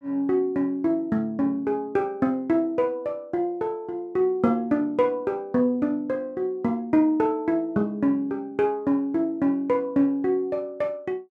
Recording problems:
none

